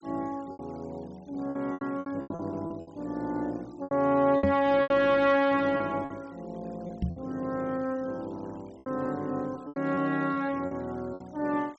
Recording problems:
treble missing; nothing above 8 kHz
denoising artefacts; signal-to-artefact ratio 28 dB
packet loss; 10% of the sound replaced, filled with repeated pitch periods
microphone thump; at 4.5 s and at 7 s; peak +4 dB vs average level

